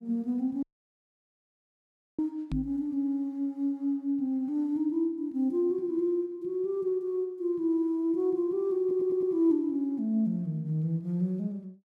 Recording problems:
dropout; at 0.5 s for 1.5 s
microphone thump; at 2.5 s; peak -2 dB vs average level
stutter; at 9 s

